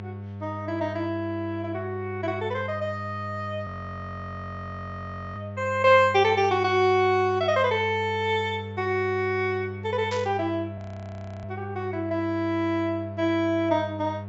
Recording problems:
treble cut off; nothing above 8 kHz
electrical hum; 50 Hz, harmonics up to 1.1 kHz, SNR 12 dB
frozen audio; at 3.5 s for 1.5 s and at 11 s for 0.5 s
burst of static; at 10 s; peak -8 dB vs average level

